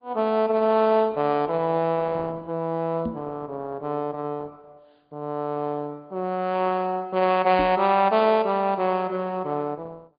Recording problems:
low-pass filter; nothing above 4.9 kHz
codec artefacts; Opus, log-spectral distance 2 dB
knock on the microphone; at 3 s and at 7.5 s; peak -2 dB vs average level

